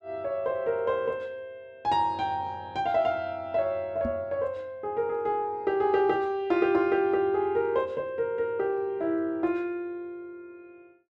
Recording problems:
microphone thump; at 4 s; peak -2 dB vs average level

